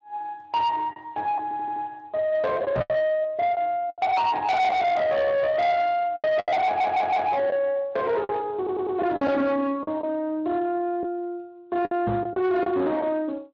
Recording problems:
codec artefacts; Speex, log-spectral distance 2 dB
distortion; soft clipping, signal-to-distortion ratio 8 dB
packet loss; 7% of the sound replaced, filled with the last packet
stutter; at 1.5 s, at 6.5 s and at 8.5 s
microphone bump; at 3 s and at 12 s; peak +1 dB vs average level

